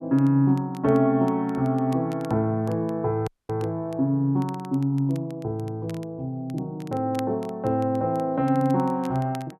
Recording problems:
crackle; vinyl, SNR 27 dB
dropout; at 3.5 s

